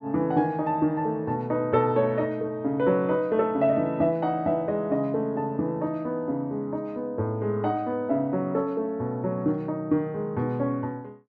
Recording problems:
none

